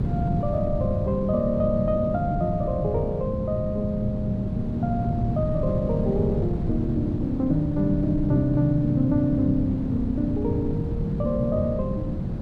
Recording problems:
wind on the microphone; below 210 Hz, SNR 3 dB

